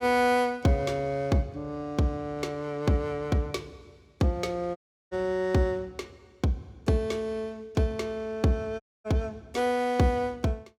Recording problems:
dropout; at 5 s and at 9 s

